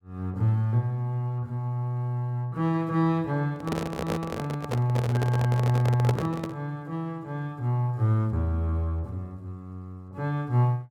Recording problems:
microphone handling noise; from 3.5 to 6.5 s; peak +2 dB vs average level

